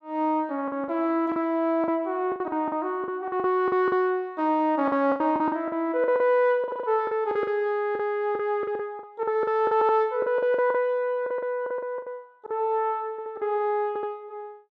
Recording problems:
packet loss; 13% of the sound replaced, filled with the last packet
stutter; 4 times, first at 6.5 s

